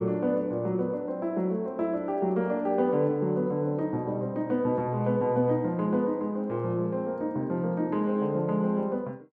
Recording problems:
none

